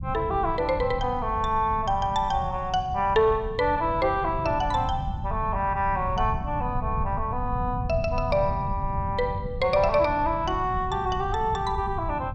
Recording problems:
rumble; below 130 Hz, SNR 8 dB

